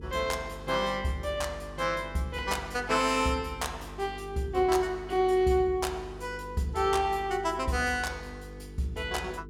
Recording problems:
electrical hum; 50 Hz, harmonics up to 450 Hz, SNR 16 dB

